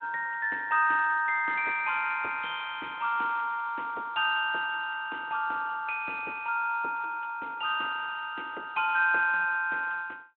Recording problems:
phone line; 280 Hz to 3.5 kHz, Speex

